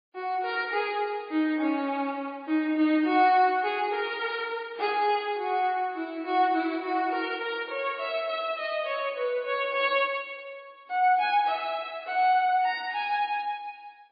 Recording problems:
lossy codec; MP3, log-spectral distance 2 dB, nothing above 4.6 kHz

